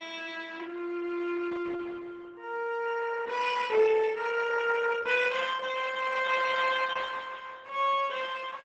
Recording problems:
codec artefacts; Opus, log-spectral distance 5 dB, nothing above 8 kHz

